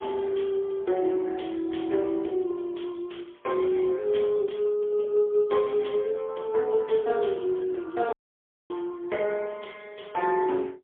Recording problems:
phone line; 280 Hz to 3.4 kHz, AMR-NB, then MP3
audio cutting out; at 8 s for 0.5 s

